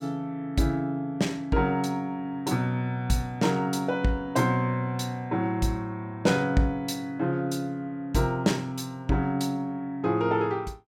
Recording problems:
none

